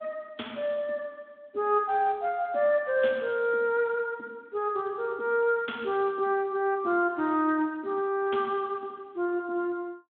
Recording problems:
telephone audio; 240 Hz to 3.5 kHz, Speex

